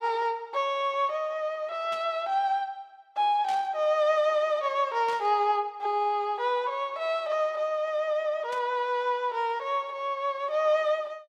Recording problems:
static burst; 4 times, first at 2 s; peak -11 dB vs average level

